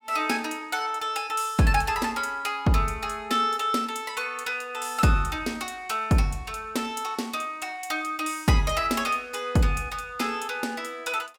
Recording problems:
none

